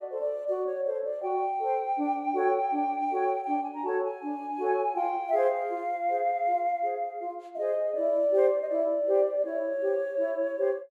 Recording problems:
none

